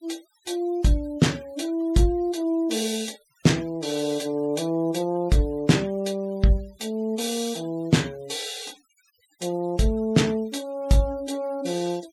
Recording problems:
denoising artefacts; signal-to-artefact ratio 23 dB

